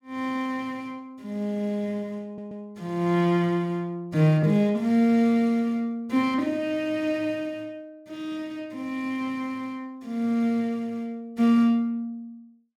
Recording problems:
stutter; at 2.5 s

